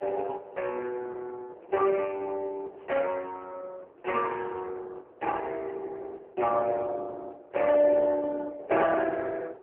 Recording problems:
telephone audio; 320 Hz to 3.1 kHz, AMR-NB
wind on the microphone; below 690 Hz, SNR 21 dB

